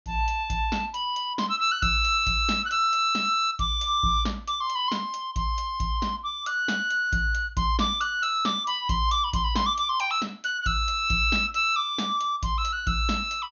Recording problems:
treble missing; nothing above 6.7 kHz

